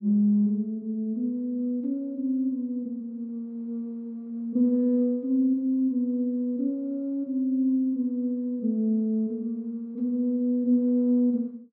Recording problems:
none

